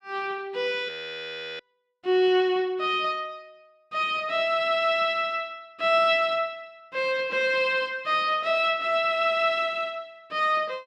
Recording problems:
audio freezing; at 1 s for 0.5 s

